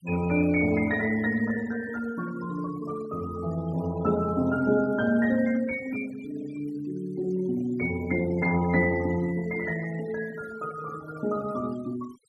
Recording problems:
denoising artefacts; signal-to-artefact ratio 19 dB

